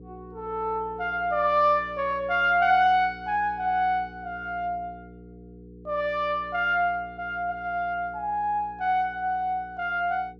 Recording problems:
hum; 60 Hz, harmonics up to 480 Hz, SNR 21 dB

